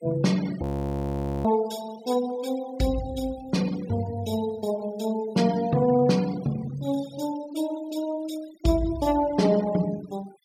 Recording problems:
noise reduction artefacts; signal-to-artefact ratio 19 dB
frozen audio; at 0.5 s for 1 s

